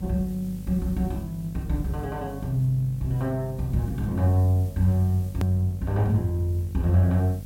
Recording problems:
mains hum; 50 Hz, harmonics up to 550 Hz, SNR 13 dB
background hiss; slope +3 dB per octave, SNR 27 dB
edit click; at 5.5 s

